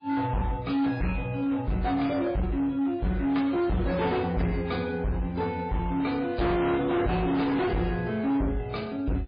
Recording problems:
lossy compression; MP3, then AAC, log-spectral distance 2 dB, nothing above 4.2 kHz
distortion; hard clipping, signal-to-distortion ratio 6 dB

